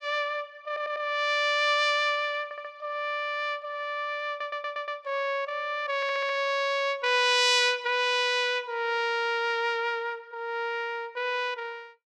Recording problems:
audio stuttering; 4 times, first at 0.5 s

